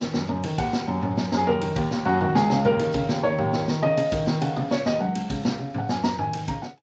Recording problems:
lossy codec; MP3, then Speex, log-spectral distance 3 dB

